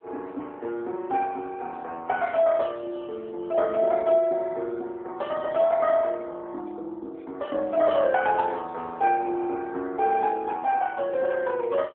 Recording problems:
telephone audio; 260 Hz to 3.6 kHz, AMR-NB

